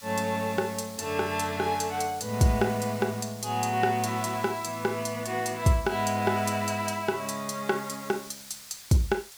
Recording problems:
hiss; slope +3 dB per octave, SNR 16 dB

